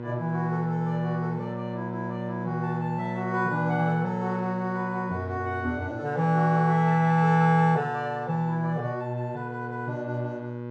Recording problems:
hum; 60 Hz, harmonics up to 1.4 kHz, SNR 10 dB

